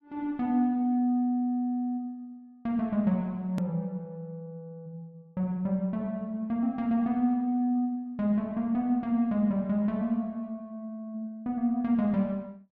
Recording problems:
edit click; at 3.5 s

